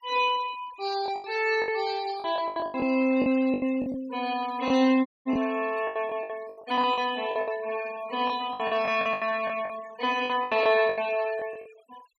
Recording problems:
noise reduction artefacts; signal-to-artefact ratio 18 dB
packet loss; 15% of the sound replaced, filled with the last packet
audio cutting out; at 5 s

